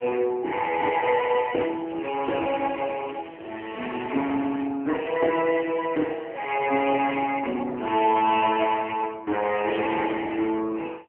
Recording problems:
telephone audio; 220 Hz to 3.1 kHz, AMR-NB
crackle; from 1.5 to 4.5 s and at 10 s; loose cable, SNR 27 dB

